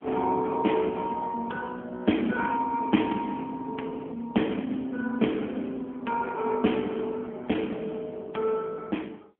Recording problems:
telephone audio; 170 Hz to 3.3 kHz, AMR-NB

